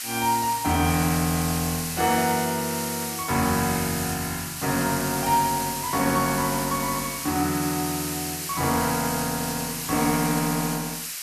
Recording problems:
hiss; slope +5 dB per octave, SNR 4 dB

